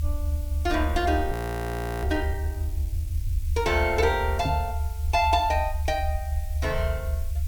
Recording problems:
hiss; SNR 21 dB
low-frequency rumble; below 76 Hz, SNR 3 dB
audio freezing; at 1.5 s for 0.5 s
microphone thump; at 4.5 s; peak +1 dB vs average level

